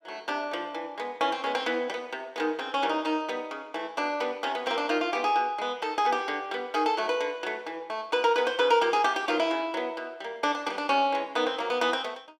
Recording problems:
none

